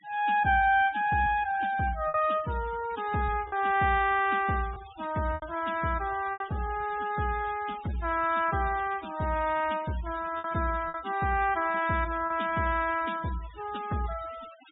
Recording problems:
low-pass filter; nothing above 4 kHz
denoising artefacts; signal-to-artefact ratio 19 dB
packet loss; 3% of the sound replaced, filled with repeated pitch periods

